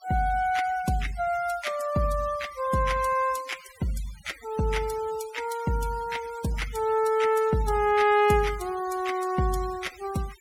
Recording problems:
denoising artefacts; signal-to-artefact ratio 18 dB

